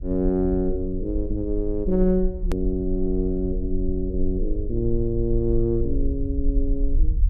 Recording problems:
low-frequency rumble; below 46 Hz, strongest tone 22 Hz, SNR 4 dB
edit click; at 2.5 s

